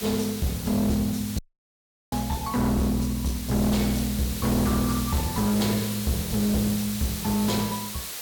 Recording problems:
distorted audio; hard clipping, uneven, signal-to-distortion ratio 6 dB
hiss; slope 0 dB per octave, SNR 8 dB
dropout; at 1.5 s for 0.5 s

